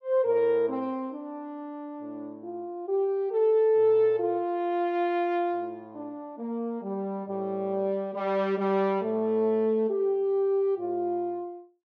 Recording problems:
none

